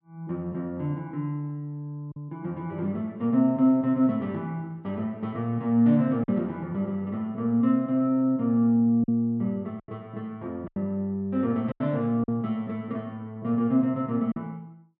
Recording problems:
packet loss; 3% of the sound replaced, filled with silence

